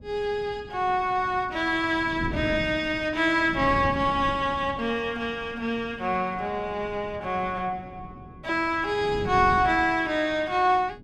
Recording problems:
wind noise; below 260 Hz, SNR 14 dB

